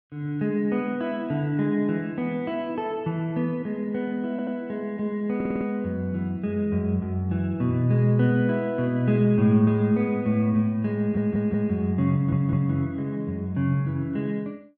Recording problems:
stutter; 4 times, first at 4.5 s

